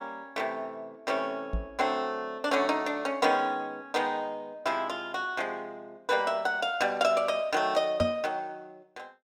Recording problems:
knock on the microphone; at 1.5 s and at 8 s; peak +1 dB vs average level

